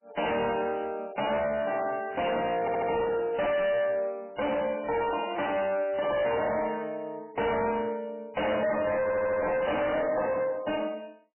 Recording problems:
lossy codec; MP3, log-spectral distance 4 dB, nothing above 2.6 kHz
distorted audio; soft clipping, signal-to-distortion ratio 6 dB
stutter; at 2.5 s and at 9 s

